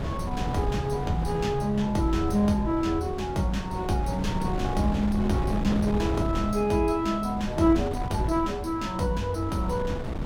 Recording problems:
wind on the microphone; below 300 Hz, SNR 6 dB

